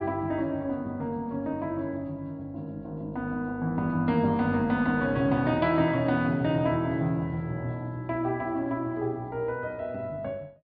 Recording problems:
treble cut off; nothing above 5 kHz

